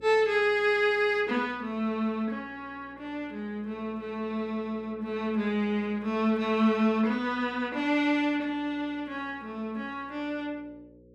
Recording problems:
hum; 60 Hz, harmonics up to 540 Hz, SNR 26 dB

